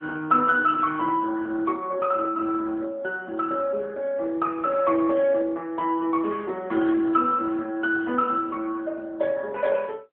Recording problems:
telephone audio; 220 Hz to 3 kHz, AMR-NB

